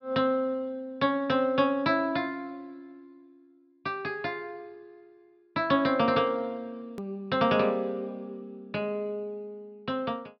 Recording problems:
treble missing; nothing above 5.5 kHz
edit click; at 7 s

